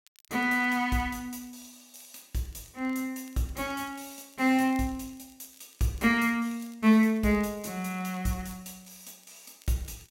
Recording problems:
crackling; vinyl, SNR 30 dB

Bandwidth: 16.5 kHz